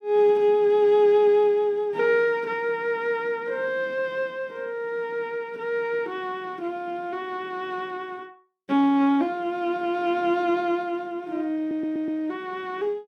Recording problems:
stutter; at 12 s

